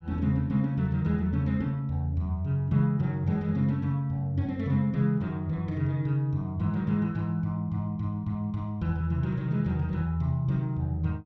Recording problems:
none

